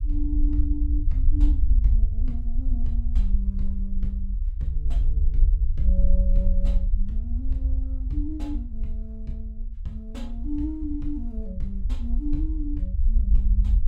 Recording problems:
low-frequency rumble; below 54 Hz, SNR -9 dB

